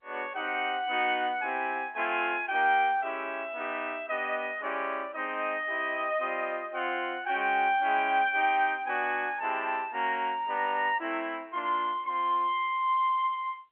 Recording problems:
phone line; 220 Hz to 3.2 kHz, G.711

